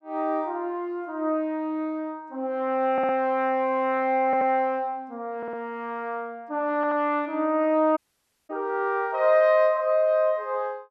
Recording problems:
stutter; 4 times, first at 3 s
audio cutting out; at 8 s for 0.5 s

